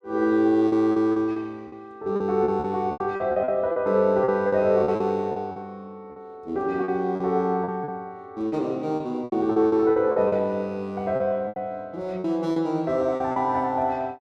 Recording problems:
lost packets; 12% of the sound replaced, filled with repeated pitch periods

